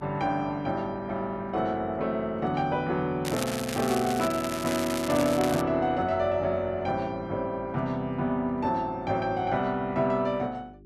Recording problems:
electrical hum; 50 Hz, harmonics up to 400 Hz, SNR 22 dB
crackling; from 3.5 to 5.5 s; loose cable, SNR 8 dB

